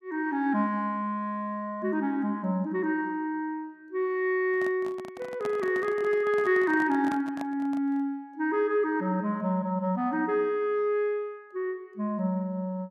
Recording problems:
microphone handling noise; from 4.5 to 8 s; peak -6 dB vs average level

